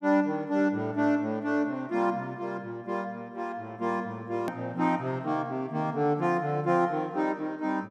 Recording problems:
click at an edit; at 4.5 s

